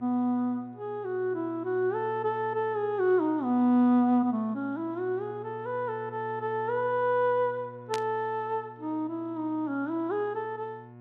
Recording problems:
hum; 60 Hz, harmonics up to 1.4 kHz, SNR 19 dB
static burst; at 8 s; peak -3 dB vs average level

